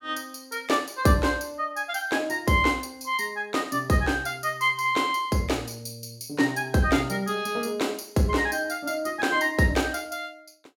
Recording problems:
none

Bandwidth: 17.5 kHz